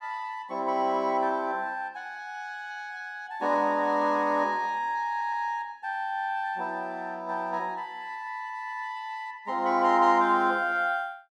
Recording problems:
stutter; at 5 s

